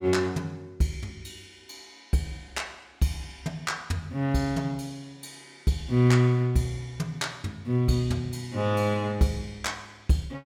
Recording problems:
none

